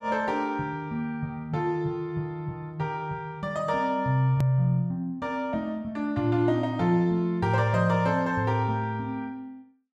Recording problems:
click at an edit; at 4.5 s

